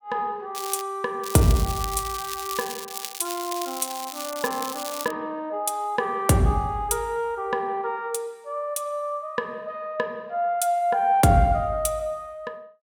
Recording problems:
crackling; at 0.5 s and from 1 to 5 s; loose cable, SNR 9 dB

